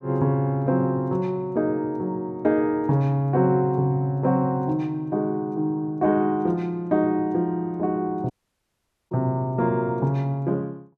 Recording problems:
audio cutting out; at 8.5 s for 1 s

